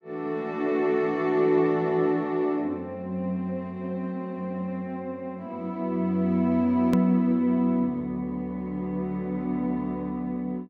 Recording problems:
click at an edit; at 7 s

